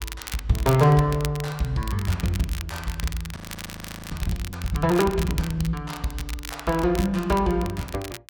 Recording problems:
crackle; vinyl, SNR 13 dB
frozen audio; at 3.5 s for 1 s

